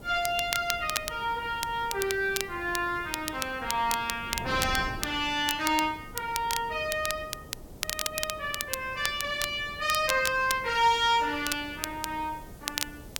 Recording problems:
hiss; slope +4 dB per octave, SNR 27 dB
wind on the microphone; below 390 Hz, SNR 17 dB
crackle; vinyl, SNR 6 dB

